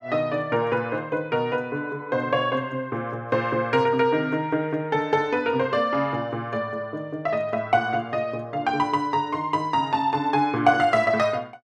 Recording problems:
none

